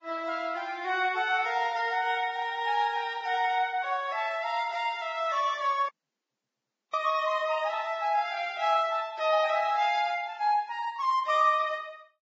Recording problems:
codec artefacts; Vorbis, log-spectral distance 3 dB, nothing above 7.3 kHz
audio cutting out; at 6 s for 1 s

